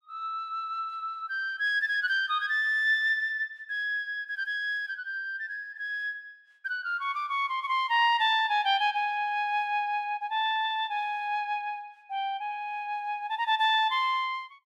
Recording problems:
none

